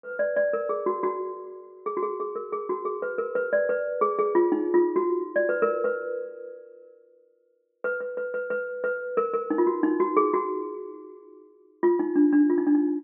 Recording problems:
low-pass filter; nothing above 4 kHz

